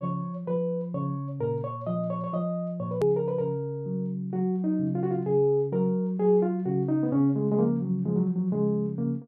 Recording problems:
click at an edit; at 3 s

